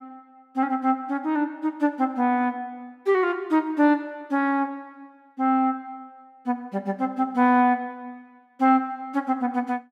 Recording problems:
none

